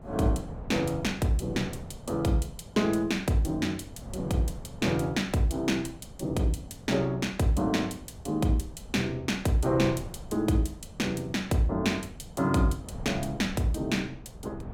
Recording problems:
wind on the microphone; below 220 Hz, SNR 16 dB

